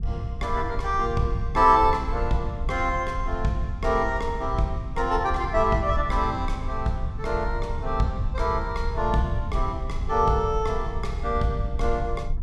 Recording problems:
low-frequency rumble; below 74 Hz, SNR 6 dB

